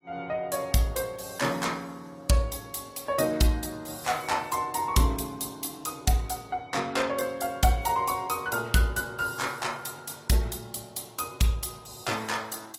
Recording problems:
lossy codec; AAC, log-spectral distance 5 dB, nothing above 14.7 kHz

